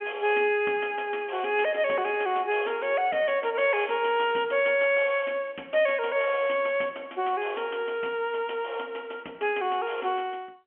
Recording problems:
telephone audio; 240 Hz to 3.3 kHz, G.711

